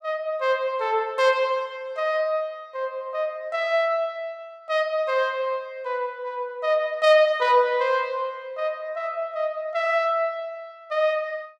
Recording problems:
none

